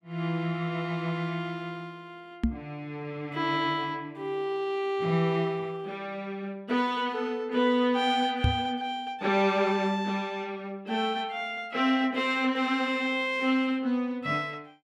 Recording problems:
knock on the microphone; at 2.5 s and at 8.5 s; peak +6 dB vs average level

